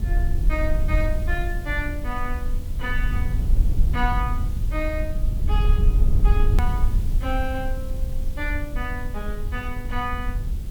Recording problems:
hum; 50 Hz, harmonics up to 500 Hz, SNR 15 dB
hiss; slope +1 dB per octave, SNR 17 dB
rumble; below 60 Hz, SNR -5 dB
hard cut with a click; at 6.5 s

